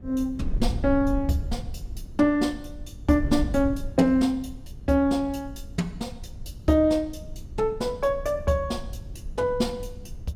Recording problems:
wind noise; below 88 Hz, SNR 12 dB

